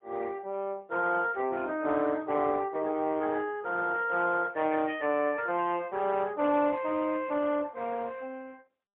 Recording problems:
telephone audio; 190 Hz to 3.5 kHz, AMR-NB, then MP3

